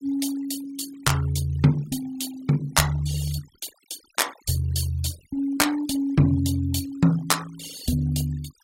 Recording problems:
noise reduction artefacts; signal-to-artefact ratio 18 dB

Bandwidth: 16 kHz